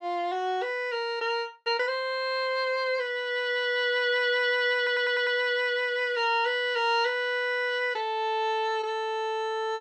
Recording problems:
audio stuttering; at 5 s

